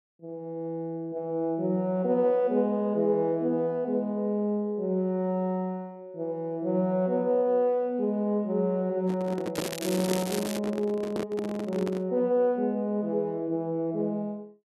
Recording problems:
handling noise; from 9 to 12 s; peak +1 dB vs average level
crackling; from 9.5 to 11 s; loose cable, SNR 9 dB

